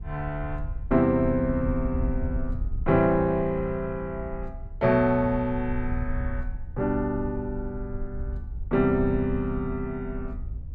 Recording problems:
wind noise; below 74 Hz, SNR 9 dB

